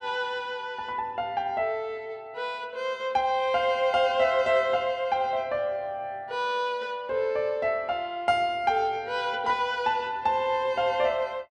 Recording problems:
none

